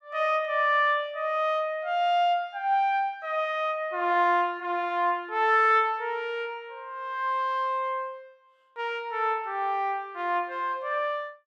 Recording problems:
none

